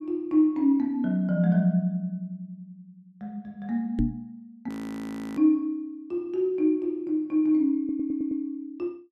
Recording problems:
microphone thump; at 4 s; peak +5 dB vs average level
audio freezing; at 4.5 s for 0.5 s
audio stuttering; at 8 s

